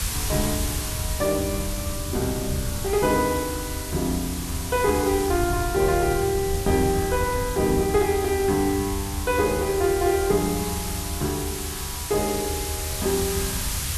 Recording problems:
background hiss; slope +1 dB per octave, SNR 6 dB
rumble; below 100 Hz, SNR 8 dB

